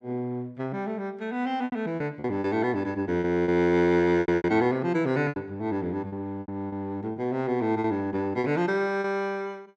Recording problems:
packet loss; 9% of the sound replaced, filled with repeated pitch periods

